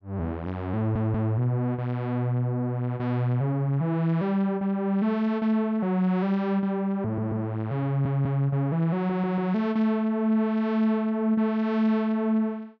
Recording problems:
audio stuttering; 4 times, first at 1 s

